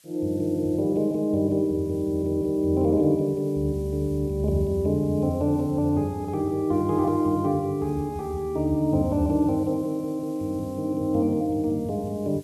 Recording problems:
hiss; SNR 29 dB

